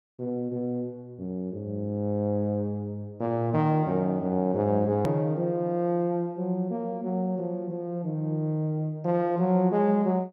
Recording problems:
click at an edit; at 5 s

